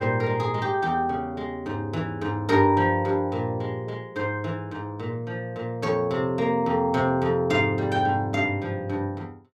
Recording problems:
none

